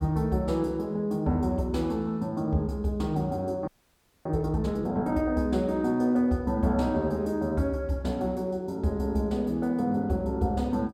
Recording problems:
audio freezing; at 3.5 s for 0.5 s

